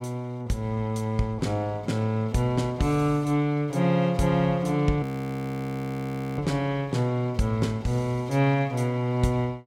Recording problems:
frozen audio; at 5 s for 1.5 s

